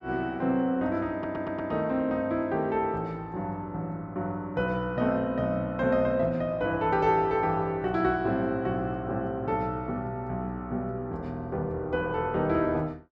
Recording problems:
stutter; at 1 s

